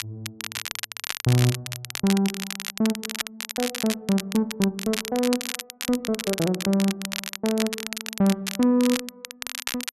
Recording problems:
crackling; vinyl, SNR 7 dB

